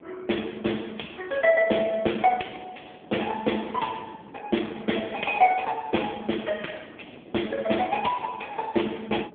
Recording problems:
phone line; 220 Hz to 3.4 kHz, AMR-NB
wind on the microphone; below 520 Hz, SNR 21 dB

